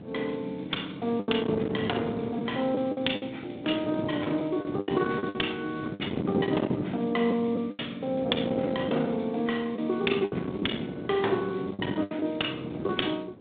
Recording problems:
telephone audio; 190 Hz to 3.7 kHz, G.726
distorted audio; soft clipping, signal-to-distortion ratio 15 dB
wind on the microphone; below 430 Hz, SNR 7 dB
packet loss; 8% of the sound replaced, filled with the last packet

